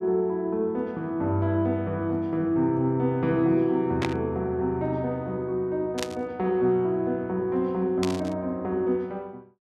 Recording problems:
burst of static; at 4 s, at 6 s and at 8 s; peak 0 dB vs average level

